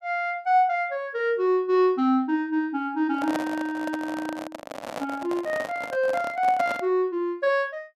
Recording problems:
handling noise; from 3 to 7 s; peak 0 dB vs average level

